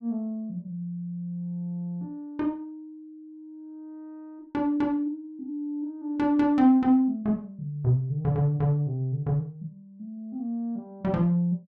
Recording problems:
none

